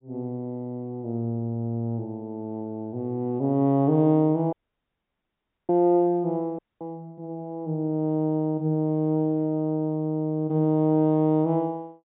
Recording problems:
treble missing; nothing above 4 kHz
dropout; at 4.5 s for 1 s and at 6.5 s

